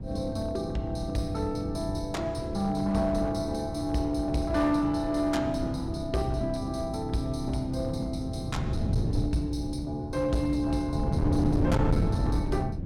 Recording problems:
distorted audio; hard clipping, uneven, signal-to-distortion ratio 10 dB
wind on the microphone; below 200 Hz, SNR 3 dB

